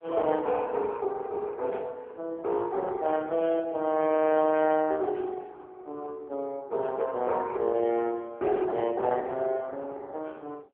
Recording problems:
phone line; 170 Hz to 3.1 kHz, AMR-NB

